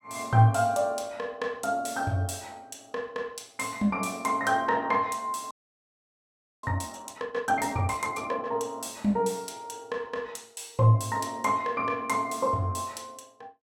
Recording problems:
frozen audio; at 5.5 s for 1 s

